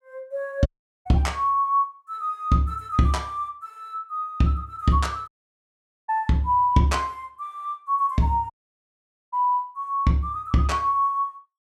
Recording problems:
audio cutting out; at 0.5 s, at 5.5 s for 1 s and at 8.5 s for 1 s

